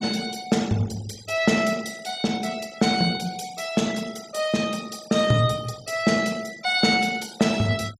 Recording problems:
noise reduction artefacts; signal-to-artefact ratio 18 dB

